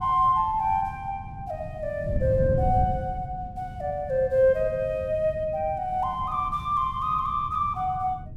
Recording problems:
wind noise; below 150 Hz, SNR 9 dB

